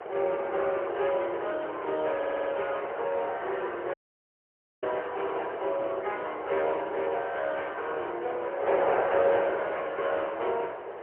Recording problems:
telephone audio; 340 Hz to 3.2 kHz, AMR-NB, then MP3
wind noise; below 940 Hz, SNR 5 dB
stutter; at 2 s
audio cutting out; at 4 s for 1 s

